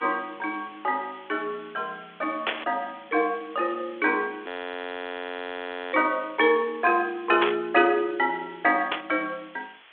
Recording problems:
telephone audio; 280 Hz to 3.5 kHz, G.726
hiss; SNR 24 dB
burst of static; at 2.5 s, at 7.5 s and at 9 s; peak +5 dB vs average level
frozen audio; at 4.5 s for 1.5 s

